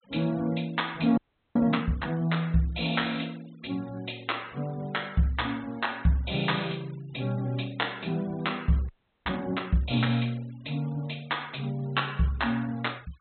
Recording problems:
treble missing; nothing above 4 kHz
denoising artefacts; signal-to-artefact ratio 24 dB
frozen audio; at 1 s and at 9 s

